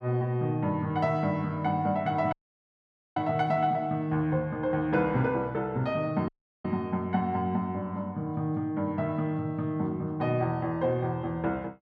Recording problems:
audio cutting out; at 2.5 s for 1 s and at 6.5 s

